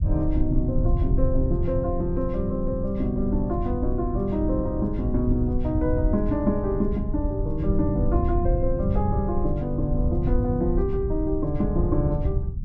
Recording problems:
rumble; below 100 Hz, SNR 1 dB

